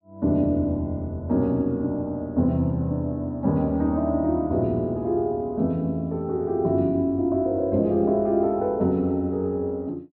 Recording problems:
treble cut off; nothing above 5.5 kHz

